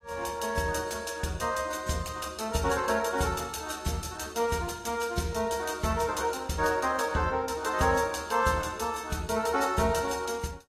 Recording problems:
codec artefacts; AAC, log-spectral distance 4 dB, nothing above 13.8 kHz

